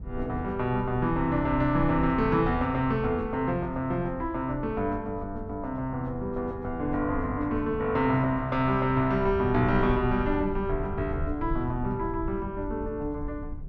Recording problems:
rumble; below 92 Hz, SNR 11 dB

